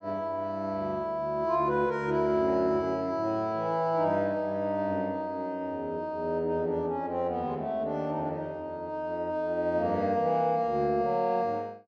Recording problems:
none

